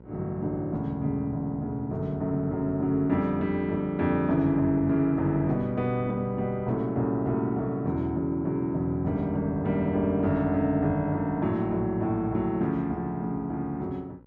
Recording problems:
hum; 60 Hz, harmonics up to 1.1 kHz, SNR 24 dB

